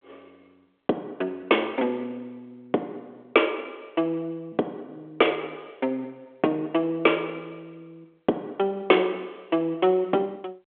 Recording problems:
phone line; 240 Hz to 3.4 kHz, G.726

